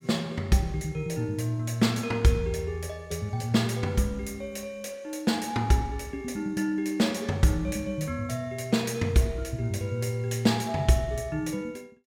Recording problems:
none

